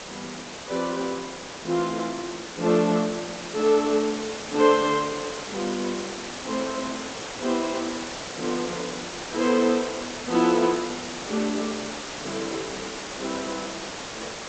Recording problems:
codec artefacts; G.722, log-spectral distance 17 dB
hiss; slope -3 dB per octave, SNR 8 dB

